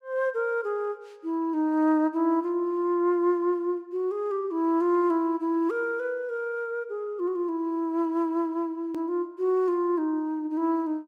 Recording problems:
hard cut with a click; at 9 s

